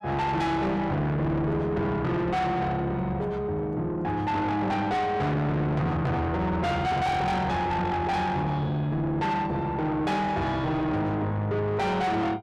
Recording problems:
distorted audio; soft clipping, signal-to-distortion ratio 6 dB

